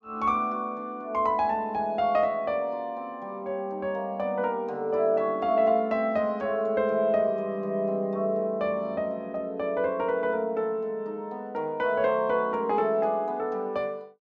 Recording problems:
treble cut off; nothing above 8 kHz

